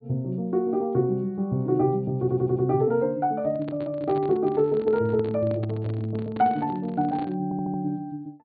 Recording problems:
treble cut off; nothing above 4.5 kHz
audio stuttering; at 2 s and at 7.5 s
handling noise; from 3.5 to 7.5 s; peak -8 dB vs average level

